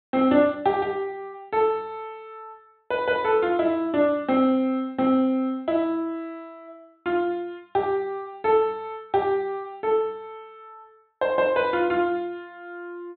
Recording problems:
treble cut off; nothing above 4 kHz

